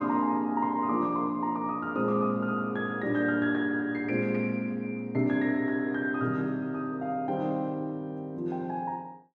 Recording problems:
none

